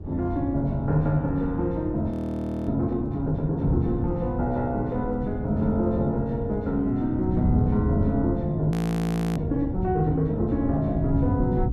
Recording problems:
wind on the microphone; below 160 Hz, SNR 5 dB
frozen audio; at 2 s for 0.5 s and at 8.5 s for 0.5 s

